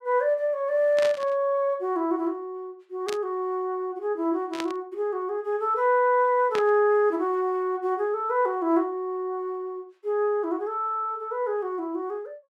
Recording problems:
burst of static; 4 times, first at 1 s; peak -4 dB vs average level

